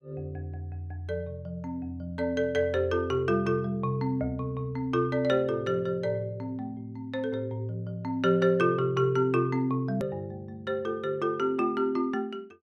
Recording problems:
click at an edit; at 10 s

